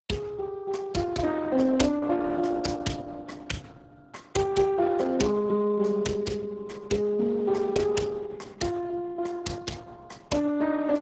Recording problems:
codec artefacts; Speex, then Opus, log-spectral distance 4 dB, nothing above 7.6 kHz

